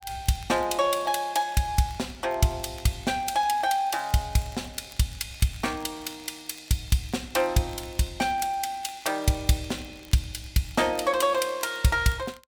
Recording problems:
crackling; vinyl, SNR 26 dB

